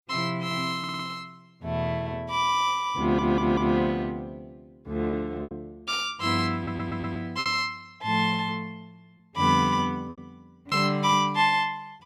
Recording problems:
lost packets; 3% of the sound replaced, filled with repeated pitch periods
audio stuttering; at 1 s, at 3 s and at 6.5 s

